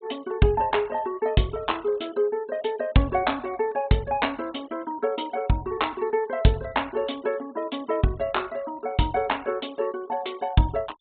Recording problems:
low-pass filter; nothing above 4 kHz
denoising artefacts; signal-to-artefact ratio 26 dB

